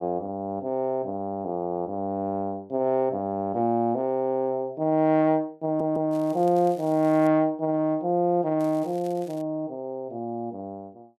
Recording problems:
stutter; at 5.5 s
crackling; from 6 to 7.5 s and at 8.5 s; loose cable, SNR 26 dB

